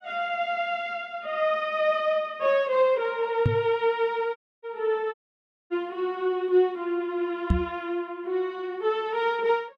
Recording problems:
knock on the microphone; at 3.5 s and at 7.5 s; peak +7 dB vs average level
dropout; at 4.5 s and at 5 s for 0.5 s

